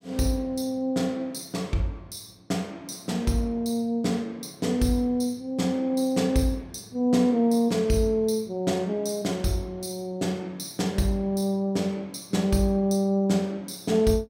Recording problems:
none

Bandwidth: 16 kHz